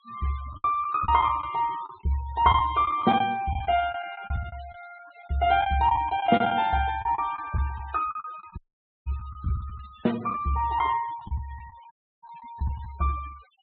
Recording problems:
low-pass filter; nothing above 4 kHz
noise reduction artefacts; signal-to-artefact ratio 21 dB
packet loss; 10% of the sound replaced, filled with the last packet
audio cutting out; at 8.5 s and at 12 s

